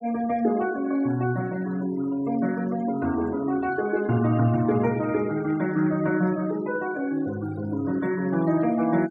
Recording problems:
noise reduction artefacts; signal-to-artefact ratio 19 dB

